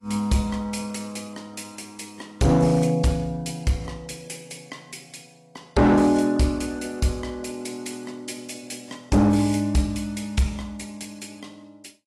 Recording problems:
codec artefacts; AAC, log-spectral distance 4 dB, nothing above 11.3 kHz
distortion; hard clipping, signal-to-distortion ratio 11 dB

